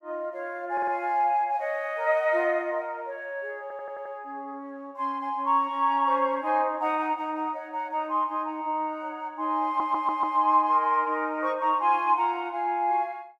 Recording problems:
audio stuttering; at 0.5 s, at 3.5 s and at 9.5 s

